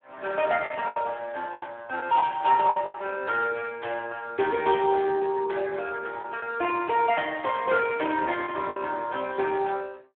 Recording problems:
phone line; 280 Hz to 2.8 kHz, Speex
packet loss; 5% of the sound replaced, filled with the last packet

